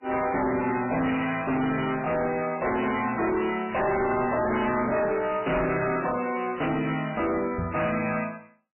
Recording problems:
lossy compression; MP3, log-spectral distance 6 dB, nothing above 2.7 kHz
distorted audio; hard clipping, signal-to-distortion ratio 6 dB
microphone thump; at 5.5 s and at 7.5 s; peak 0 dB vs average level

